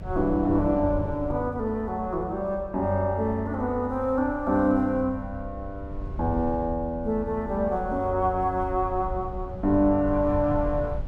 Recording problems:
rumble; below 98 Hz, SNR 12 dB

